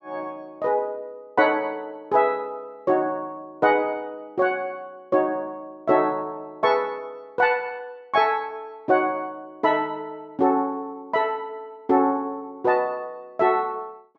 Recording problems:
none

